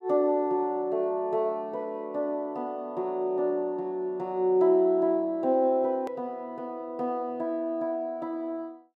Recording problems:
edit click; at 6 s

